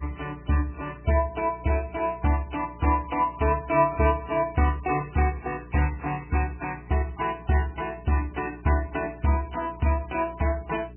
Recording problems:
lossy codec; MP3, log-spectral distance 5 dB, nothing above 2.4 kHz
electrical hum; 60 Hz, harmonics up to 420 Hz, SNR 19 dB

